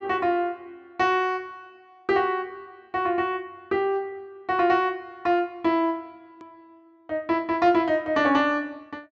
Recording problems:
treble cut off; nothing above 7.7 kHz
hard cut with a click; at 6.5 s

